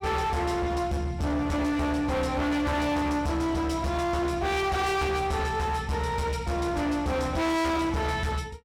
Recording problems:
distorted audio; hard clipping, uneven, signal-to-distortion ratio 6 dB

